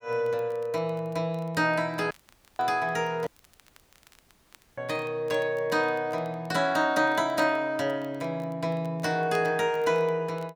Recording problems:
crackling; vinyl, SNR 29 dB
dropout; at 2 s and at 3.5 s for 1.5 s

